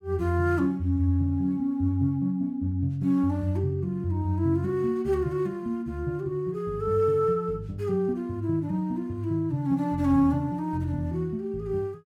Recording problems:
none

